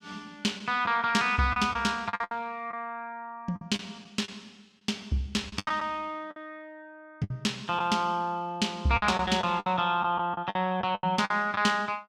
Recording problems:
lost packets; 9% of the sound replaced, filled with the last packet

